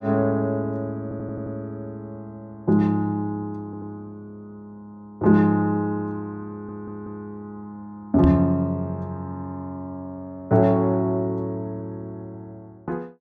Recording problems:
audio stuttering; at 1 s, at 3.5 s and at 6.5 s
knock on the microphone; at 8 s; peak +6 dB vs average level

